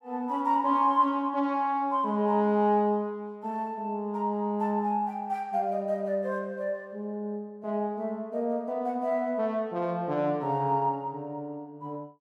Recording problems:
none

